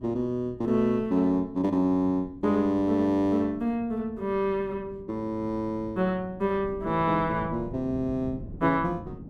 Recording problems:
wind on the microphone; below 250 Hz, SNR 17 dB

